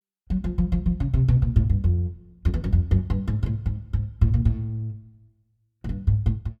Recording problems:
none

